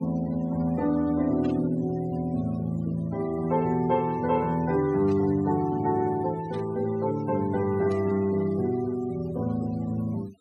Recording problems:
denoising artefacts; signal-to-artefact ratio 20 dB
burst of static; 4 times, first at 1.5 s; peak -16 dB vs average level

